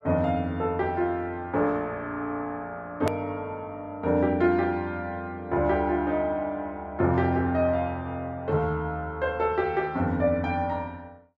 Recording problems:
edit click; at 3 s

